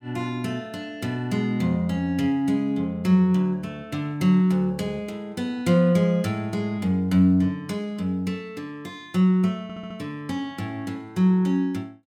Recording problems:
stutter; at 9.5 s

